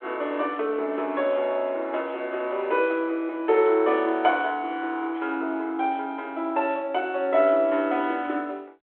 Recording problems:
telephone audio; 260 Hz to 3.5 kHz, G.726

